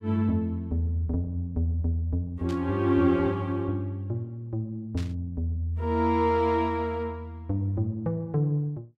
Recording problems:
static burst; at 2.5 s and at 5 s; peak -12 dB vs average level

